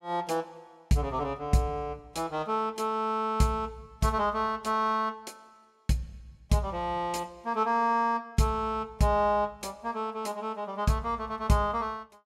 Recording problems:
none

